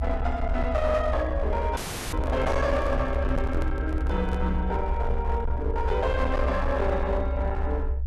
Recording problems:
distortion; hard clipping, signal-to-distortion ratio 11 dB
low-frequency rumble; below 68 Hz, SNR 2 dB
dropout; at 2 s
handling noise; from 2 to 4.5 s; peak -6 dB vs average level

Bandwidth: 12.5 kHz